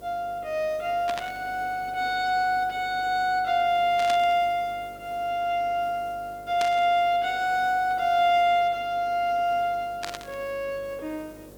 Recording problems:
hum; 50 Hz, harmonics up to 600 Hz, SNR 24 dB
hiss; SNR 27 dB
static burst; 4 times, first at 1 s; peak -4 dB vs average level

